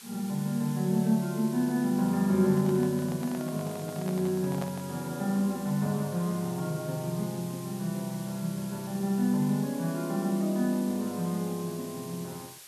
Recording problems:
background hiss; slope +2 dB per octave, SNR 16 dB
handling noise; from 2.5 to 5 s; peak -6 dB vs average level

